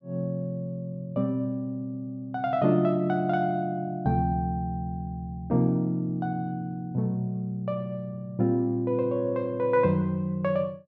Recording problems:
none

